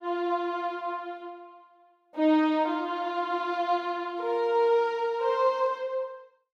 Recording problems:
none

